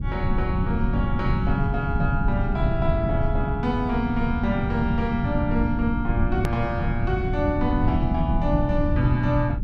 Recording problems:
rumble; below 150 Hz, SNR 0 dB
edit click; at 6.5 s

